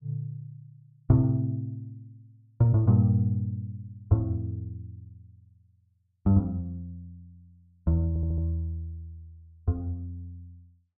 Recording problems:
stutter; at 8 s

